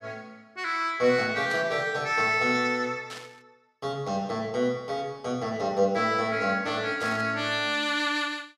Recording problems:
static burst; at 1.5 s, at 3 s and at 7 s; peak -9 dB vs average level

